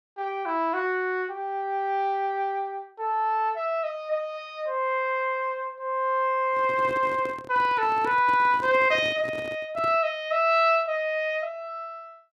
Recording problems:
microphone handling noise; from 6.5 to 10 s; peak -7 dB vs average level

